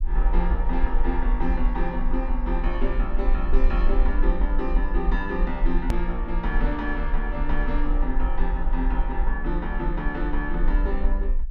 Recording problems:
low-frequency rumble; below 42 Hz, strongest tone 20 Hz, SNR -2 dB
edit click; at 6 s

